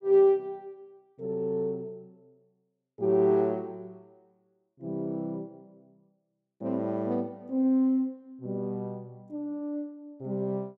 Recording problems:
none

